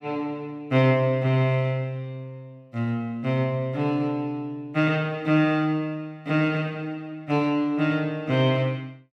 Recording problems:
none

